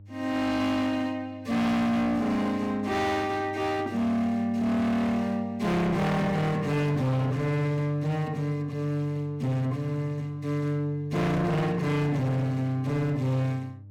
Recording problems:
distortion; hard clipping, signal-to-distortion ratio 6 dB
electrical hum; 50 Hz, harmonics up to 300 Hz, SNR 19 dB

